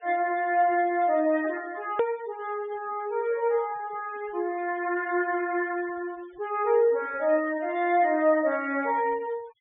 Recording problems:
treble cut off; nothing above 3.6 kHz
denoising artefacts; signal-to-artefact ratio 23 dB
click at an edit; at 2 s

